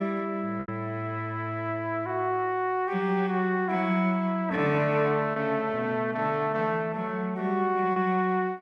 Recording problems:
lost packets; 1.9% of the sound replaced, filled with repeated pitch periods

